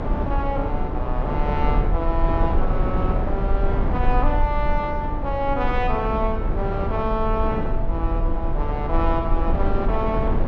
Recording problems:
treble missing; nothing above 7.3 kHz
low-frequency rumble; below 48 Hz, SNR 1 dB
wind on the microphone; below 530 Hz, SNR 2 dB

